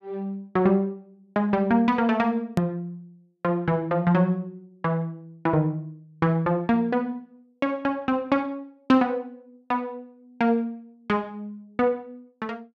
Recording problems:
hard cut with a click; at 2.5 s

